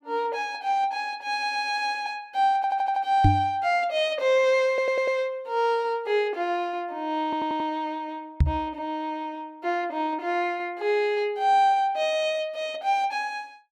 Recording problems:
stutter; 4 times, first at 1.5 s
knock on the microphone; at 3 s and at 8.5 s; peak +8 dB vs average level

